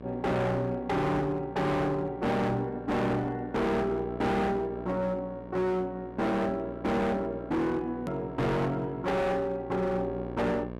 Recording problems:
distortion; hard clipping, uneven, signal-to-distortion ratio 6 dB
hum; 60 Hz, harmonics up to 1.8 kHz, SNR 13 dB
hard cut with a click; at 8 s

